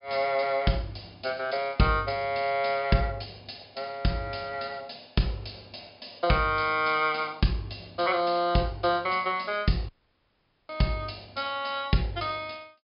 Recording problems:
low-pass filter; nothing above 5.5 kHz
audio cutting out; at 10 s for 1 s

